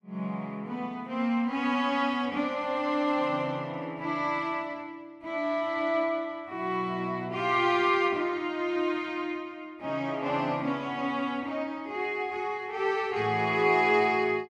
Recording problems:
none

